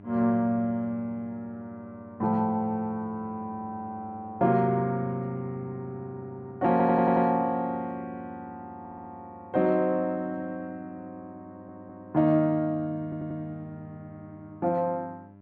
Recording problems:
hum; 50 Hz, harmonics up to 1 kHz, SNR 22 dB
stutter; 4 times, first at 6.5 s

